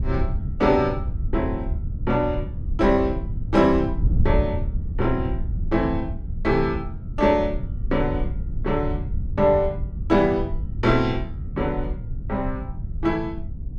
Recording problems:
wind on the microphone; below 98 Hz, SNR 6 dB

